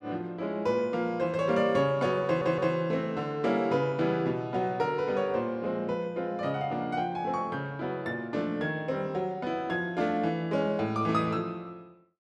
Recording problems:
stutter; at 2.5 s

